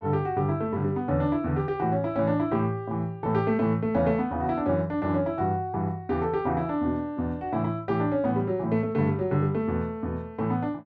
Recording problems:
none

